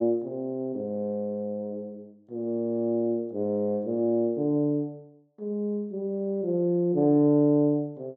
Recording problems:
none

